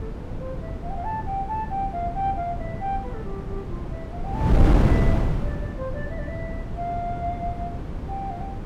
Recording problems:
wind noise; below 230 Hz, SNR -4 dB

